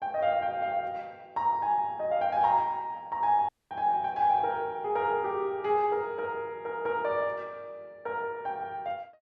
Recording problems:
dropout; at 3.5 s

